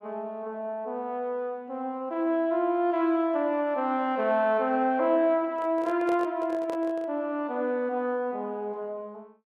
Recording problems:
handling noise; from 5.5 to 7 s; peak -6 dB vs average level

